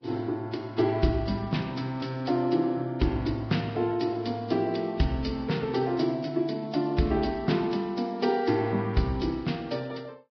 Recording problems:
codec artefacts; Vorbis, log-spectral distance 4 dB, nothing above 5.2 kHz

